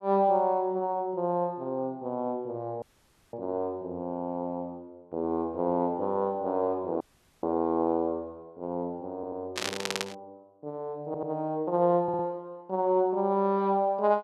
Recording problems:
dropout; at 3 s for 0.5 s and at 7 s
audio stuttering; 4 times, first at 9 s
static burst; at 9.5 s; peak +3 dB vs average level

